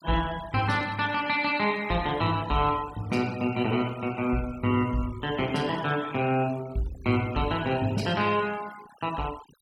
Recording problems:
noise reduction artefacts; signal-to-artefact ratio 19 dB

